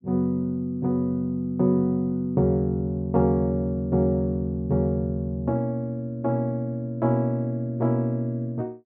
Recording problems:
low-pass filter; nothing above 6.9 kHz

